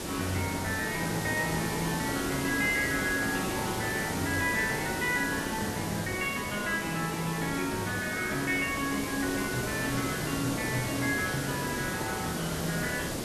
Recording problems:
background hiss; SNR 3 dB

